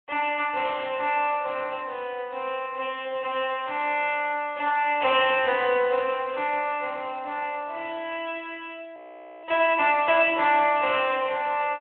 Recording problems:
phone line; 340 Hz to 3.4 kHz, Speex
audio freezing; at 9 s

